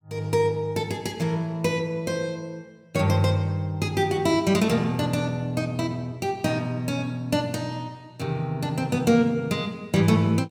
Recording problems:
none

